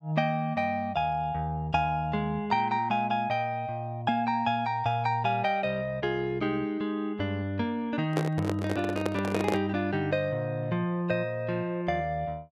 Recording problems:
microphone handling noise; from 8 to 9.5 s; peak +3 dB vs average level

